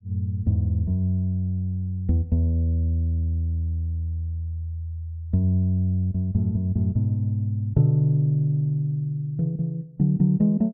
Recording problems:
none

